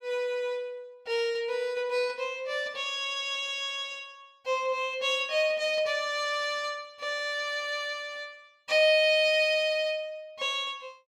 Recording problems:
none

